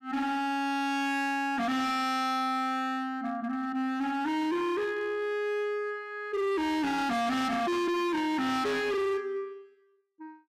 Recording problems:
distorted audio; hard clipping, signal-to-distortion ratio 7 dB

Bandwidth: 15.5 kHz